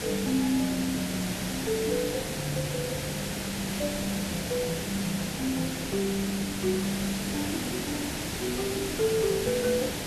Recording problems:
background hiss; SNR 2 dB

